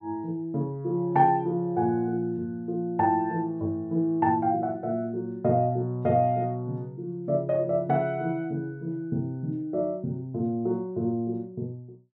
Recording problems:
none

